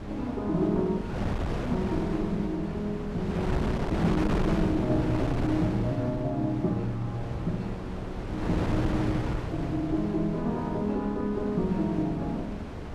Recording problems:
wind on the microphone; below 500 Hz, SNR 4 dB

